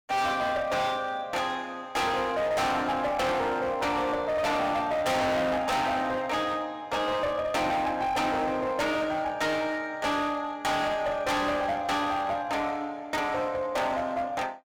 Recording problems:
distortion; hard clipping, uneven, signal-to-distortion ratio 5 dB

